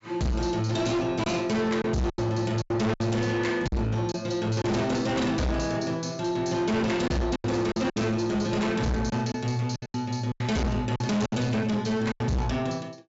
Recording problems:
treble missing; nothing above 8 kHz
distortion; soft clipping, signal-to-distortion ratio 6 dB
lost packets; 8% of the sound replaced, filled with silence

